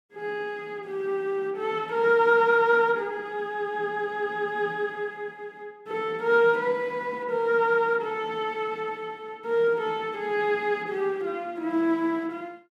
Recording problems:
none

